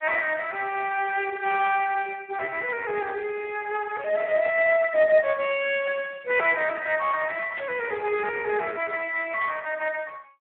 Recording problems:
phone line; 340 Hz to 3.9 kHz, Speex
static burst; 4 times, first at 1.5 s; peak -10 dB vs average level

